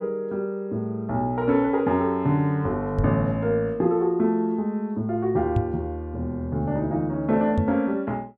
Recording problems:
knock on the microphone; at 3 s, at 5.5 s and at 7.5 s; peak +4 dB vs average level

